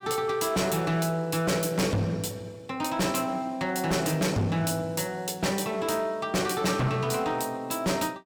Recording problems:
distorted audio; hard clipping, signal-to-distortion ratio 6 dB

